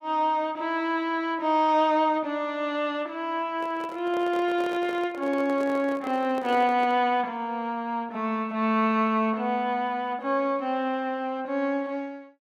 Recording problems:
handling noise; from 3.5 to 7 s; peak -8 dB vs average level

